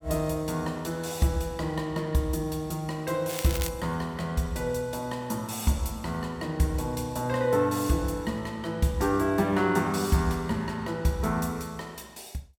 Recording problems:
crackle; at 3.5 s; loose cable, SNR 8 dB

